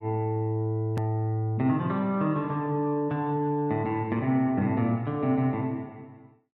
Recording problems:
hard cut with a click; at 1 s

